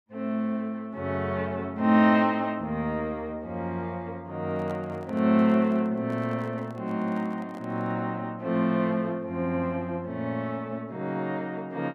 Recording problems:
microphone handling noise; from 4.5 to 8 s; peak -11 dB vs average level

